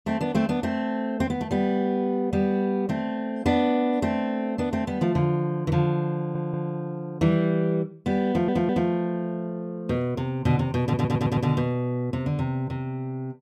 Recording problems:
stutter; at 6 s, at 8.5 s and at 11 s

